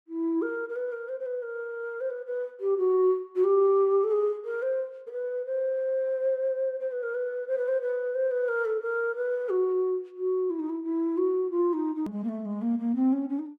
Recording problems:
hard cut with a click; at 12 s

